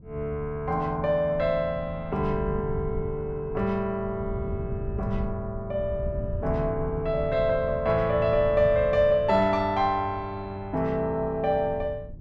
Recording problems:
wind on the microphone; below 130 Hz, SNR 11 dB

